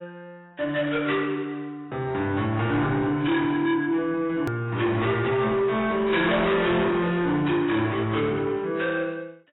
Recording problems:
lossy compression; AAC, log-spectral distance 3 dB, nothing above 3.7 kHz
distorted audio; soft clipping, signal-to-distortion ratio 8 dB
hard cut with a click; at 4.5 s

